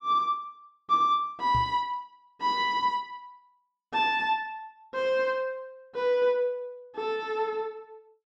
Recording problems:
knock on the microphone; at 1.5 s; peak -2 dB vs average level

